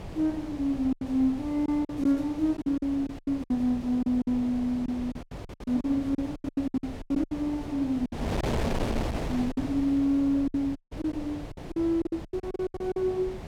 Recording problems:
electrical hum; 50 Hz, harmonics up to 600 Hz, SNR 22 dB
wind on the microphone; below 610 Hz, SNR 9 dB
lost packets; 14% of the sound replaced, filled with silence
audio cutting out; at 11 s

